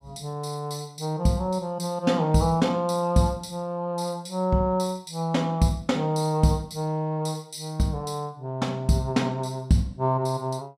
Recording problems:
none

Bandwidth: 15.5 kHz